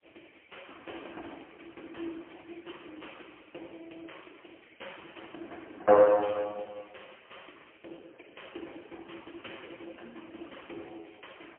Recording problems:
phone line; 300 Hz to 3.2 kHz, AMR-NB, then MP3

